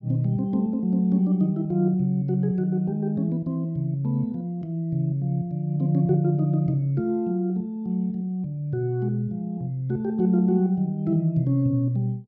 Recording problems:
none

